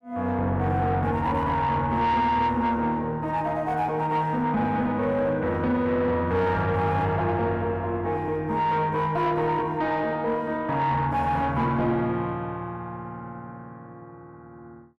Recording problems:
distortion; soft clipping, signal-to-distortion ratio 11 dB

